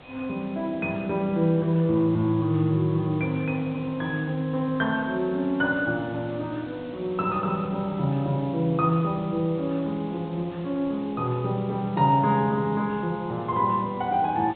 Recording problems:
treble cut off; nothing above 4 kHz
hiss; SNR 21 dB

